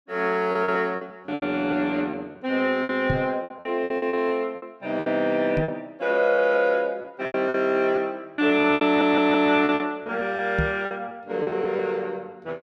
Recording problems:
packet loss; 13% of the sound replaced, filled with repeated pitch periods
microphone thump; at 3 s, at 5.5 s and at 11 s; peak +2 dB vs average level
audio stuttering; at 9 s

